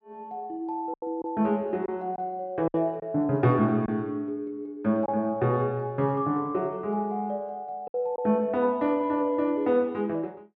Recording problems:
packet loss; 3% of the sound replaced, filled with silence

